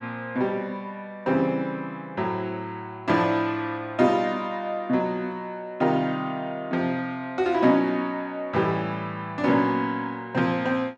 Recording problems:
none

